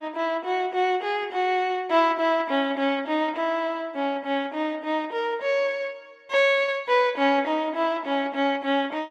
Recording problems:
lossy codec; Opus, log-spectral distance 2 dB

